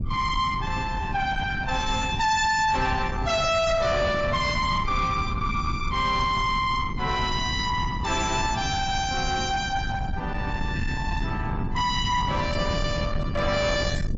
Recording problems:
lossy compression; AAC, log-spectral distance 3 dB, nothing above 6.9 kHz
distortion; soft clipping, signal-to-distortion ratio 7 dB
rumble; below 250 Hz, SNR 6 dB

